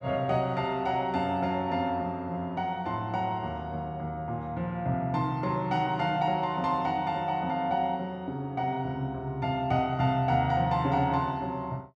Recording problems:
none

